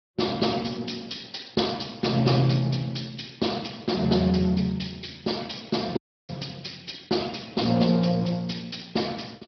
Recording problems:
treble missing; nothing above 5.3 kHz
lossy compression; Speex, log-spectral distance 10 dB
audio cutting out; at 6 s

